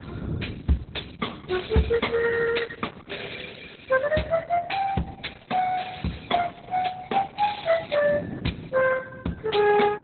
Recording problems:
lossy codec; Opus, then Opus, log-spectral distance 8 dB, nothing above 4 kHz
wind on the microphone; below 300 Hz, SNR 16 dB

